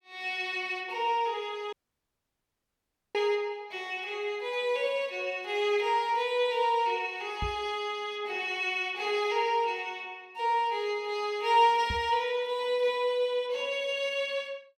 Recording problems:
dropout; at 1.5 s for 1.5 s
microphone bump; at 7.5 s and at 12 s; peak -3 dB vs average level

